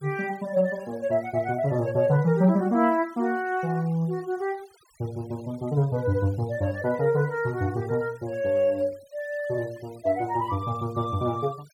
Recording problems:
noise reduction artefacts; signal-to-artefact ratio 27 dB

